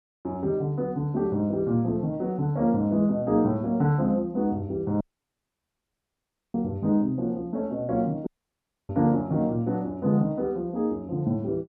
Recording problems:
audio cutting out; at 5 s for 1.5 s and at 8.5 s for 0.5 s

